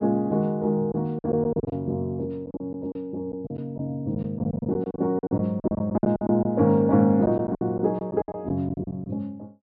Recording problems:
treble missing; nothing above 5.5 kHz
lost packets; 13% of the sound replaced, filled with silence

